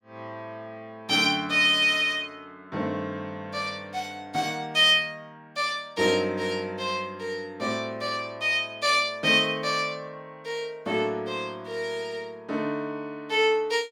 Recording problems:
none

